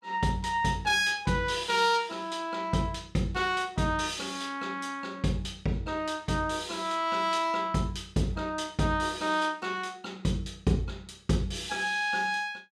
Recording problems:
none

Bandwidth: 16 kHz